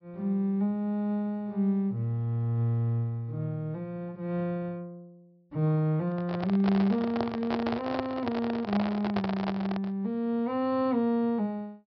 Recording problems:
treble missing; nothing above 5.5 kHz
microphone handling noise; from 6 to 10 s; peak +1 dB vs average level

